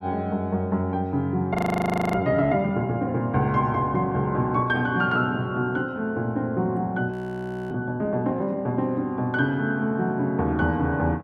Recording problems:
audio freezing; at 1.5 s for 0.5 s and at 7 s for 0.5 s

